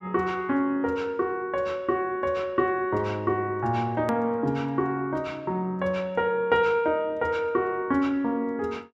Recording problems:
edit click; at 4 s

